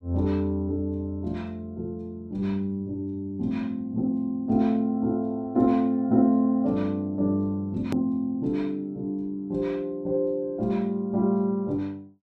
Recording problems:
edit click; at 8 s

